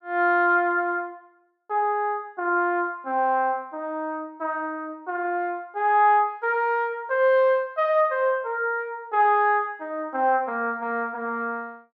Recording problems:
none

